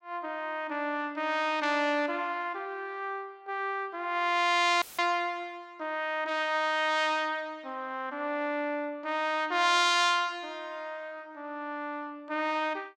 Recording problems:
audio cutting out; at 5 s; filled with static

